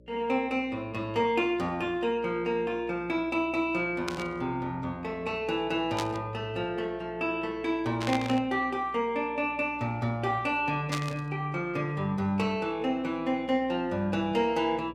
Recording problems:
electrical hum; 60 Hz, harmonics up to 600 Hz, SNR 24 dB
burst of static; 4 times, first at 4 s; peak 0 dB vs average level

